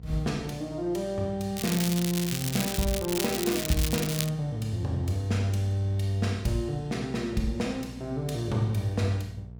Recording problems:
electrical hum; 60 Hz, harmonics up to 660 Hz, SNR 17 dB
crackle; from 1.5 to 4.5 s; loose cable, SNR 3 dB

